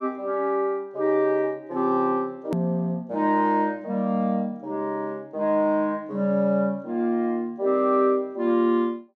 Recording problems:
click at an edit; at 2.5 s

